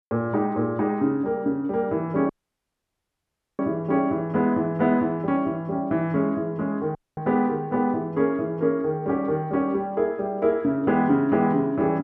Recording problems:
audio cutting out; at 2.5 s for 1.5 s and at 7 s

